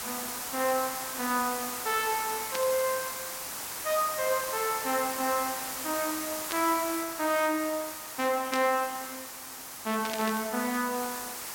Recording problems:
background hiss; SNR 5 dB
burst of static; 4 times, first at 2.5 s; peak -1 dB vs average level

